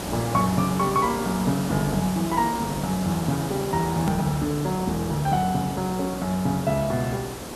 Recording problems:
hum; 60 Hz, harmonics up to 480 Hz, SNR 21 dB
hiss; SNR 8 dB
hard cut with a click; at 4 s

